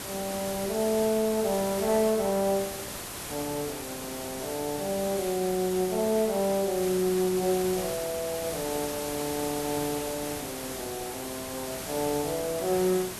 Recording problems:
background hiss; slope -3 dB per octave, SNR 6 dB

